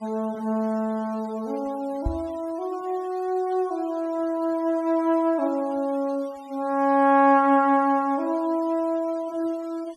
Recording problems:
denoising artefacts; signal-to-artefact ratio 27 dB
microphone bump; at 2 s; peak 0 dB vs average level

